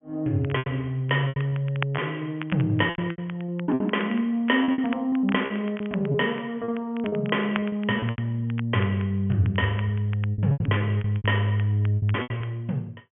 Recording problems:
treble cut off; nothing above 3.3 kHz
crackling; vinyl, SNR 17 dB
packet loss; 12% of the sound replaced, filled with repeated pitch periods

